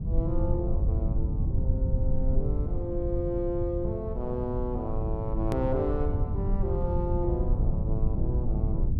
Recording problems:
low-frequency rumble; below 100 Hz, SNR -3 dB
hard cut with a click; at 5.5 s

